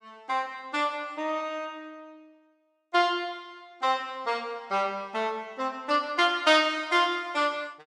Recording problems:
none

